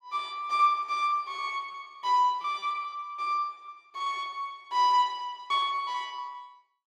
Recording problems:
packet loss; 14% of the sound replaced, filled with repeated pitch periods

